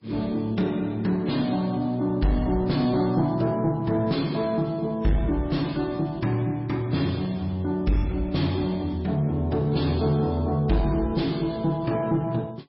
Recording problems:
lossy codec; MP3, log-spectral distance 2 dB, nothing above 4.9 kHz
distortion; soft clipping, signal-to-distortion ratio 11 dB

